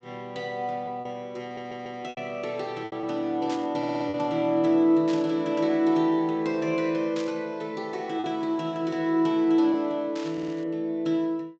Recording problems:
treble missing; nothing above 8 kHz
lost packets; 3% of the sound replaced, filled with repeated pitch periods
stutter; at 1.5 s, at 4 s and at 10 s
burst of static; 4 times, first at 3.5 s; peak -9 dB vs average level

